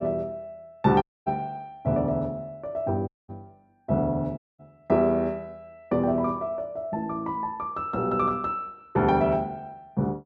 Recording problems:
audio cutting out; at 1 s, at 3 s and at 4.5 s

